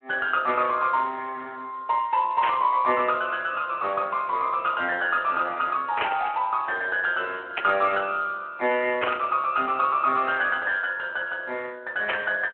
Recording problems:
telephone audio; 300 Hz to 3.6 kHz, Speex
static burst; 5 times, first at 2.5 s; peak +3 dB vs average level

